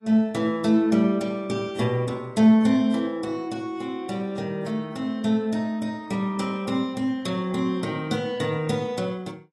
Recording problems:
lossy compression; AAC, log-spectral distance 2 dB, nothing above 11 kHz

